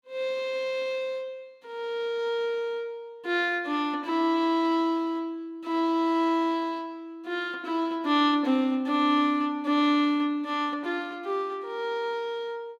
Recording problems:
none

